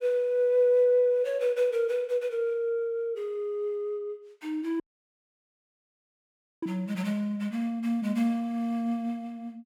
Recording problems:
audio cutting out; at 5 s for 2 s

